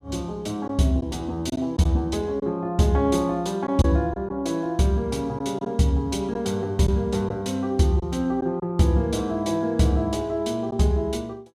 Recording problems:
lost packets; 2% of the sound replaced, filled with silence

